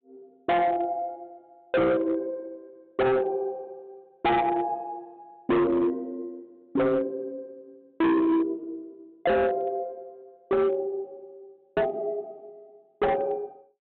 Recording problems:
low-pass filter; nothing above 4 kHz
distortion; hard clipping, signal-to-distortion ratio 6 dB

